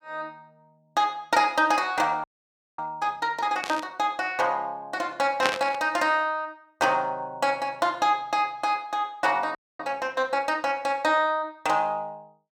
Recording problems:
frozen audio; at 2 s for 0.5 s and at 9.5 s
static burst; at 3.5 s and at 5.5 s; peak +5 dB vs average level

